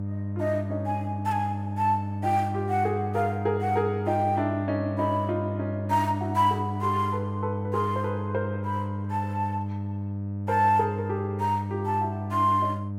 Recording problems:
electrical hum; 50 Hz, harmonics up to 600 Hz, SNR 4 dB

